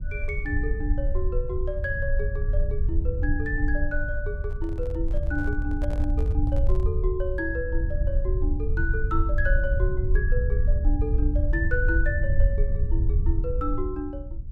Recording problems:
low-frequency rumble; below 70 Hz, SNR -4 dB
handling noise; from 4.5 to 7 s; peak -6 dB vs average level

